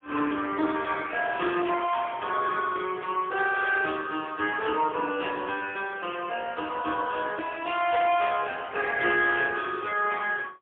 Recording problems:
telephone audio; 260 Hz to 3.3 kHz, AMR-NB, then MP3

